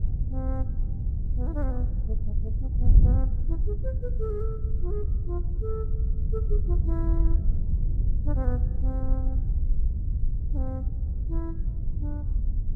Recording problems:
wind on the microphone; below 72 Hz, SNR -11 dB

